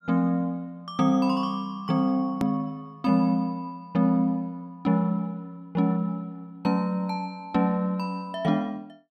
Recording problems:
hard cut with a click; at 2.5 s

